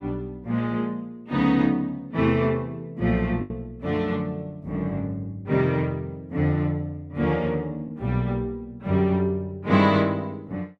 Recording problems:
packet loss; 0.9% of the sound replaced, filled with the last packet

